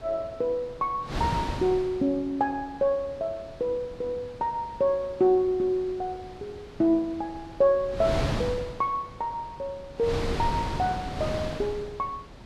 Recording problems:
wind on the microphone; below 690 Hz, SNR 8 dB

